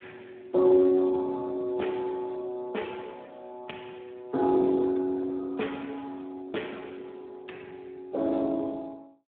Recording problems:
phone line; 240 Hz to 3.5 kHz, Speex

